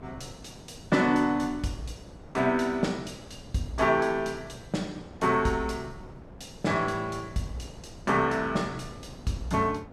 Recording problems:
wind noise; below 460 Hz, SNR 18 dB

